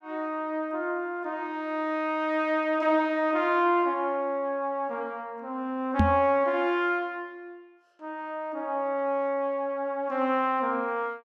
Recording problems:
microphone bump; at 6 s; peak +7 dB vs average level

